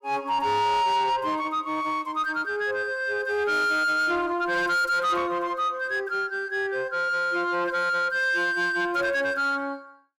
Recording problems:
distortion; soft clipping, signal-to-distortion ratio 10 dB

